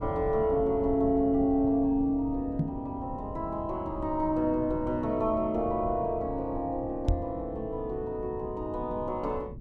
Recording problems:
low-frequency rumble; below 170 Hz, SNR 12 dB
knock on the microphone; at 2.5 s and at 7 s; peak +5 dB vs average level

